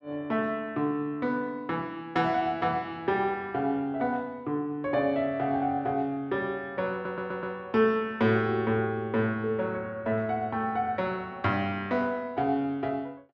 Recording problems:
audio stuttering; at 7 s

